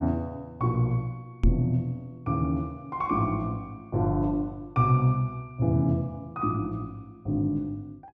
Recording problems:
knock on the microphone; at 1.5 s; peak +7 dB vs average level

